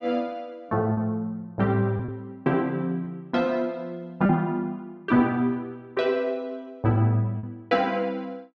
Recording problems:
packet loss; 2% of the sound replaced, filled with repeated pitch periods

